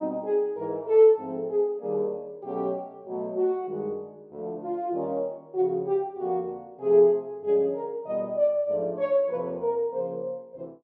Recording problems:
none

